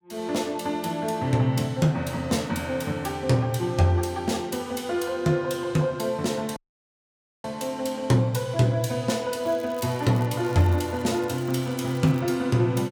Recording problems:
audio cutting out; at 6.5 s for 1 s
crackle; from 9.5 to 12 s; loose cable, SNR 23 dB

